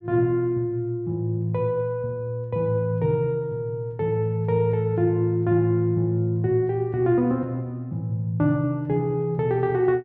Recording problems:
none

